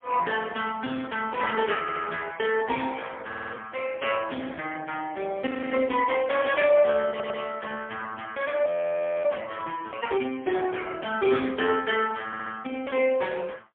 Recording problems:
telephone audio; 190 Hz to 3.1 kHz, AMR-NB, then MP3
stutter; 4 times, first at 2 s
audio freezing; at 5.5 s and at 8.5 s for 0.5 s

